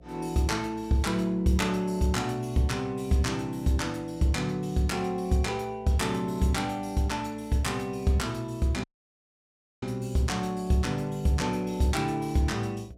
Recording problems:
hum; 60 Hz, harmonics up to 720 Hz, SNR 26 dB
dropout; at 9 s for 1 s

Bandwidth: 16 kHz